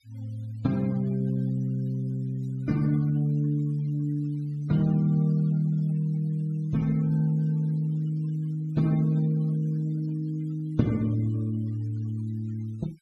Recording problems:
denoising artefacts; signal-to-artefact ratio 27 dB

